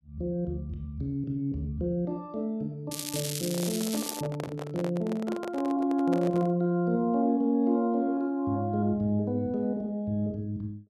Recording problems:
crackling; from 3 to 4 s; loose cable, SNR 5 dB
handling noise; from 3.5 to 6.5 s; peak -3 dB vs average level

